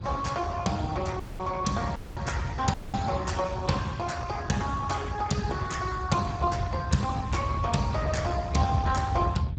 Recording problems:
lossy compression; Speex, log-spectral distance 3 dB, nothing above 7.6 kHz
low-frequency rumble; below 130 Hz, SNR 5 dB
audio cutting out; at 1 s, at 2 s and at 2.5 s

